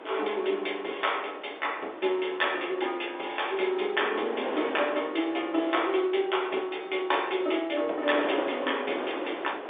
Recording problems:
phone line; 260 Hz to 3.7 kHz, G.711
wind noise; below 1.1 kHz, SNR 10 dB

